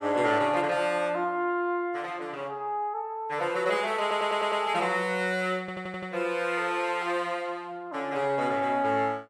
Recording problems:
audio stuttering; at 4 s and at 5.5 s

